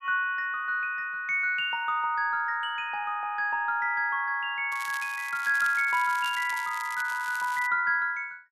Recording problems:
crackle; from 4.5 to 7.5 s; loose cable, SNR 16 dB

